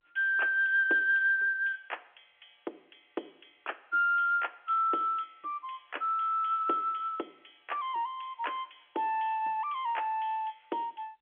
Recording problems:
telephone audio; 280 Hz to 3.4 kHz, G.711

